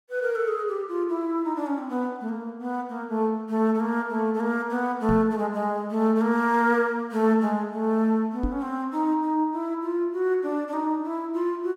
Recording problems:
microphone bump; at 5 s and at 8.5 s; peak 0 dB vs average level

